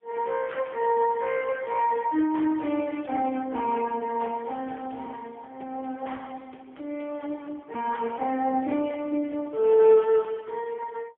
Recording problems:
telephone audio; 240 Hz to 3.2 kHz, AMR-NB, then MP3

